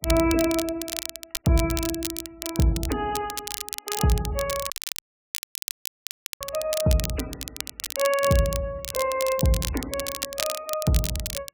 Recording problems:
lossy compression; MP3, log-spectral distance 5 dB
crackling; vinyl, SNR 6 dB
dropout; at 4.5 s for 1.5 s

